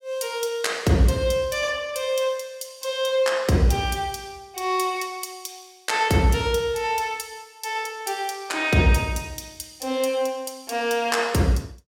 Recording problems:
none

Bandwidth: 16.5 kHz